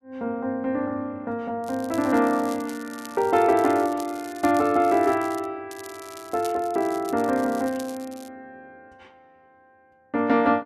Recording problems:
crackling; from 1.5 to 5.5 s and from 5.5 to 8.5 s; loose cable, SNR 20 dB

